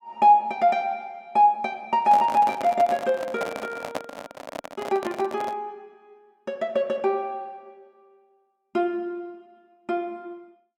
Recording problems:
handling noise; from 2 to 5.5 s; peak -2 dB vs average level

